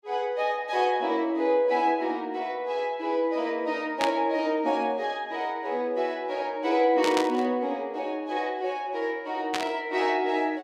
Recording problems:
burst of static; at 4 s, at 7 s and at 9.5 s; peak +2 dB vs average level

